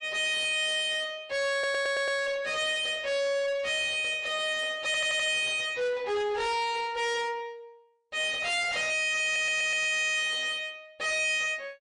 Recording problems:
lossy codec; MP3, log-spectral distance 3 dB, nothing above 8.2 kHz
distortion; soft clipping, signal-to-distortion ratio 7 dB
audio stuttering; at 1.5 s, at 5 s and at 9 s

